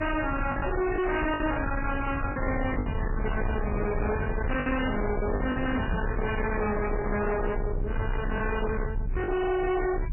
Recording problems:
codec artefacts; MP3, log-spectral distance 4 dB, nothing above 2.6 kHz
distorted audio; soft clipping, signal-to-distortion ratio 6 dB
low-frequency rumble; below 330 Hz, SNR 3 dB
lost packets; 6% of the sound replaced, filled with the last packet
microphone bump; at 6 s and at 8 s; peak +2 dB vs average level

